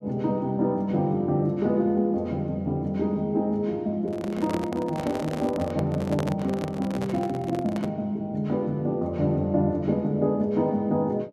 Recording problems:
microphone handling noise; from 4 to 8 s; peak -1 dB vs average level

